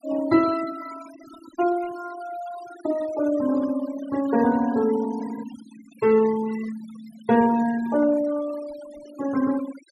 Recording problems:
noise reduction artefacts; signal-to-artefact ratio 17 dB

